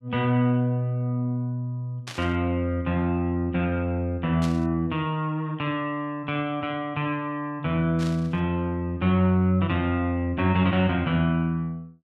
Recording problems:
burst of static; at 2 s, at 4.5 s and at 8 s; peak -7 dB vs average level

